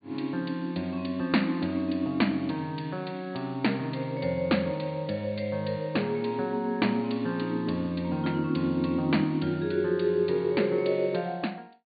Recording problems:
low-pass filter; nothing above 4.5 kHz

